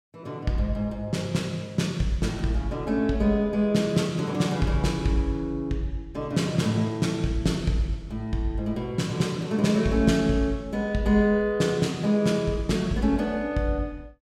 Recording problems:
none

